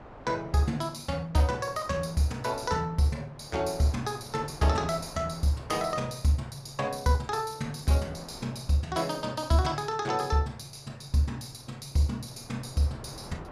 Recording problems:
wind noise; below 980 Hz, SNR 19 dB

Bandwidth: 15 kHz